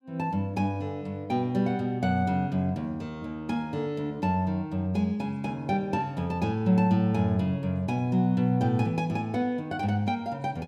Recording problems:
none

